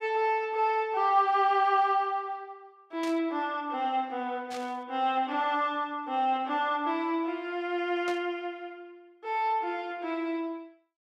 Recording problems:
burst of static; at 3 s, at 4.5 s and at 8 s; peak -9 dB vs average level

